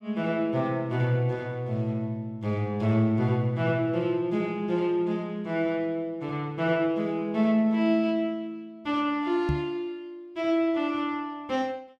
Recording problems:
knock on the microphone; at 9.5 s; peak +3 dB vs average level

